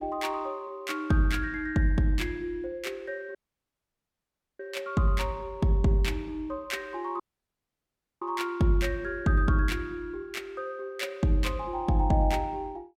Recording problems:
audio cutting out; at 3.5 s for 1 s and at 7 s for 1 s

